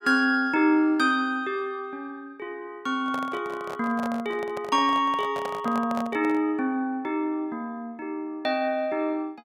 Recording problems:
microphone handling noise; from 3 to 6.5 s; peak -5 dB vs average level

